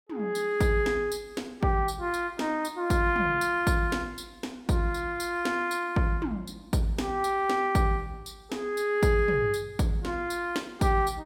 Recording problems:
none

